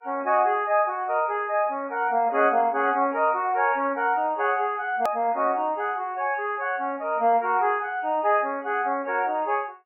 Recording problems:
codec artefacts; MP3, log-spectral distance 2 dB, nothing above 2.5 kHz
click at an edit; at 5 s

